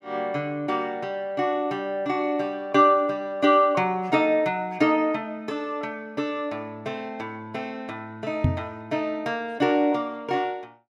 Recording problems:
microphone thump; at 8.5 s; peak +7 dB vs average level

